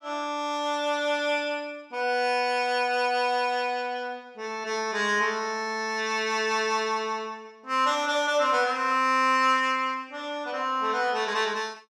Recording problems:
none

